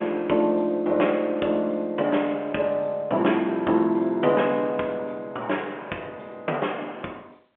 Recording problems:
phone line; 300 Hz to 3.3 kHz, G.711

